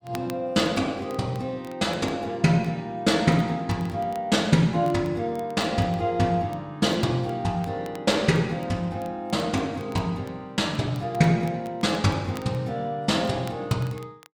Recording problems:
crackling; vinyl, SNR 25 dB

